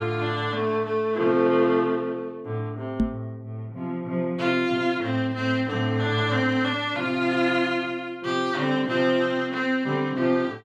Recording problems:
microphone bump; at 3 s; peak +5 dB vs average level

